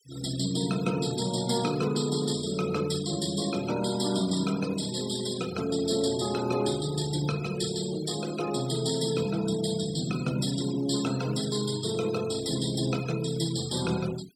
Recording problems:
noise reduction artefacts; signal-to-artefact ratio 15 dB

